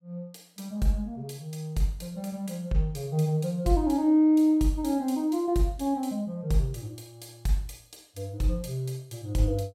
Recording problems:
none

